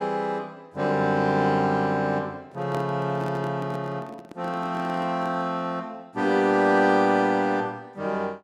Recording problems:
handling noise; from 2.5 to 5.5 s; peak -7 dB vs average level

